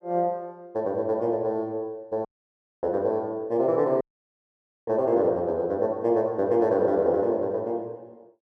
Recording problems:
audio cutting out; at 2.5 s for 0.5 s and at 4 s for 1 s

